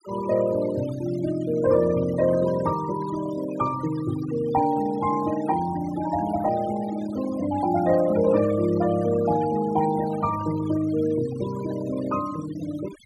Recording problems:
denoising artefacts; signal-to-artefact ratio 15 dB

